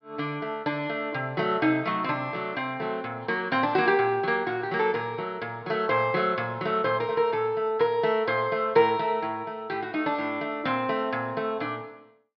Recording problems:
treble cut off; nothing above 5.5 kHz

